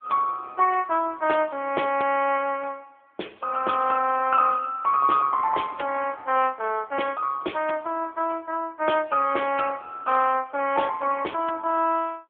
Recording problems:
telephone audio; 280 Hz to 2.6 kHz, AMR-NB

